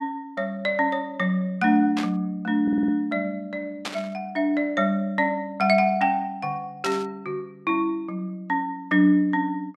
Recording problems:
burst of static; at 2 s, at 4 s and at 7 s; peak -2 dB vs average level
stutter; at 2.5 s

